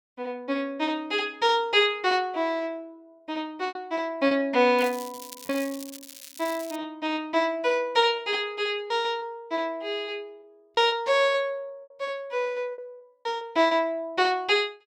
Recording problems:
packet loss; 5% of the sound replaced, filled with repeated pitch periods
crackling; from 5 to 7 s; loose cable, SNR 16 dB

